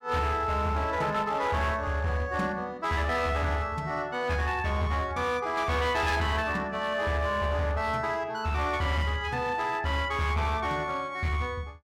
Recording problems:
distortion; hard clipping, uneven, signal-to-distortion ratio 11 dB

